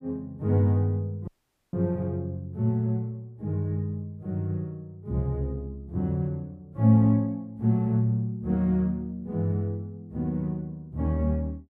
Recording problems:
audio cutting out; at 1.5 s

